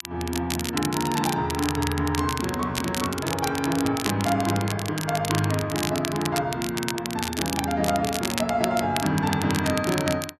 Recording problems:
crackle; vinyl, SNR 6 dB

